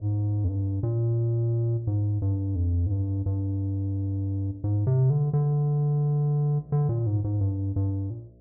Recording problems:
hum; 60 Hz, harmonics up to 660 Hz, SNR 28 dB

